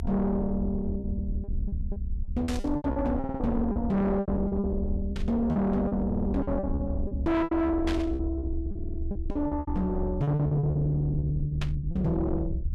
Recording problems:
distortion; soft clipping, signal-to-distortion ratio 8 dB
low-frequency rumble; below 92 Hz, SNR 5 dB
packet loss; 14% of the sound replaced, filled with repeated pitch periods
burst of static; 4 times, first at 2.5 s; peak -4 dB vs average level
stutter; at 3 s, at 6 s and at 8.5 s

